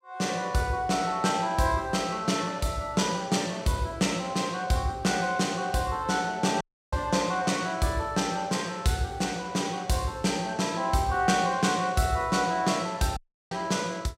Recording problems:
audio cutting out; at 6.5 s and at 13 s

